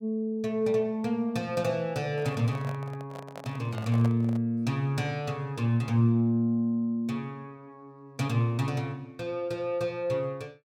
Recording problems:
handling noise; from 2 to 4.5 s; peak -6 dB vs average level

